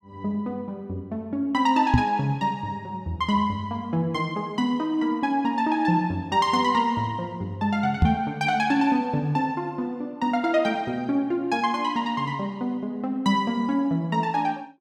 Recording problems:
knock on the microphone; at 2 s and at 8 s; peak +9 dB vs average level

